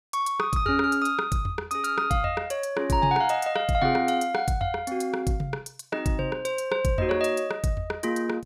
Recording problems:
none

